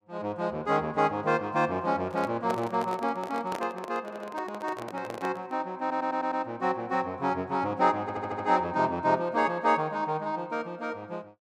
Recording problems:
microphone handling noise; from 2 to 5.5 s; peak -1 dB vs average level
audio stuttering; at 4 s, at 6 s and at 8 s

